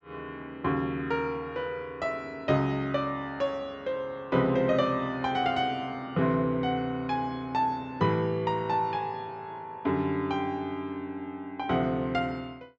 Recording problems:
treble missing; nothing above 8 kHz

